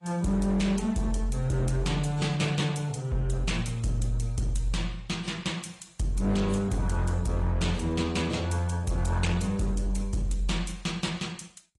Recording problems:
lossy codec; AAC, then AAC, log-spectral distance 3 dB, nothing above 10.7 kHz
distortion; hard clipping, signal-to-distortion ratio 12 dB

